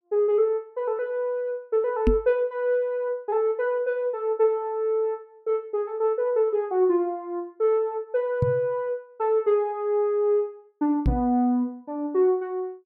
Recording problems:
knock on the microphone; at 2 s, at 8.5 s and at 11 s; peak +6 dB vs average level

